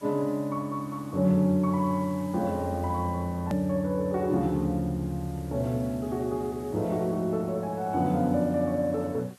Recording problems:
background hiss; SNR 25 dB
edit click; at 3.5 s

